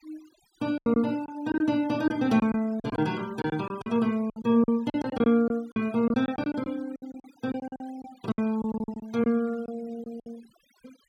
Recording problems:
noise reduction artefacts; signal-to-artefact ratio 24 dB
packet loss; 14% of the sound replaced, filled with silence

